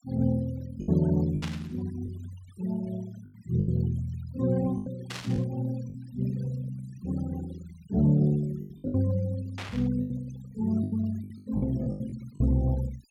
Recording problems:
noise reduction artefacts; signal-to-artefact ratio 19 dB
packet loss; 9% of the sound replaced, filled with the last packet
static burst; at 1.5 s, at 5 s and at 9.5 s; peak -4 dB vs average level

